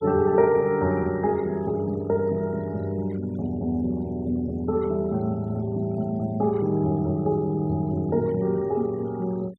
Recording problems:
noise reduction artefacts; signal-to-artefact ratio 26 dB

